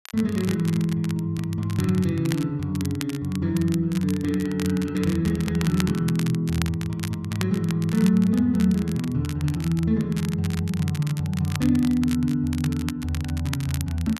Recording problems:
crackling; vinyl, SNR 15 dB

